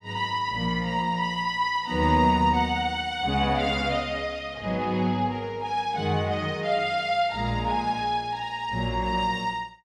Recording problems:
none

